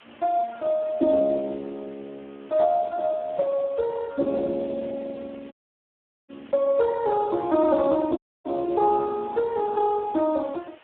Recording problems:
telephone audio; 260 Hz to 2.2 kHz, Speex
hiss; SNR 27 dB
dropout; at 5.5 s for 1 s and at 8 s

